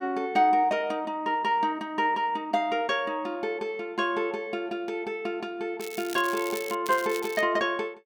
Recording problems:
crackle; at 6 s and at 7 s; loose cable, SNR 13 dB

